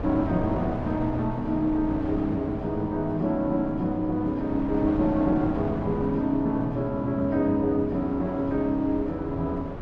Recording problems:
wind noise; below 560 Hz, SNR 9 dB

